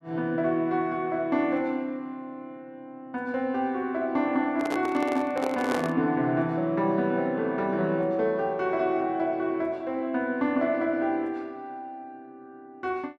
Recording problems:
handling noise; from 4.5 to 6 s; peak 0 dB vs average level

